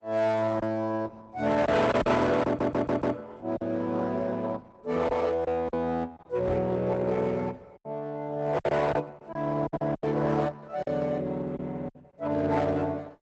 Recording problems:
lossy codec; Opus, log-spectral distance 3 dB, nothing above 8 kHz
distortion; hard clipping, signal-to-distortion ratio 11 dB
lost packets; 6% of the sound replaced, filled with silence
stutter; at 2.5 s
knock on the microphone; at 6.5 s; peak -2 dB vs average level

